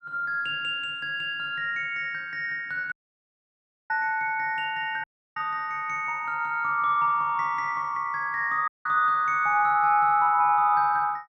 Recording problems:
audio cutting out; at 3 s for 1 s, at 5 s and at 8.5 s

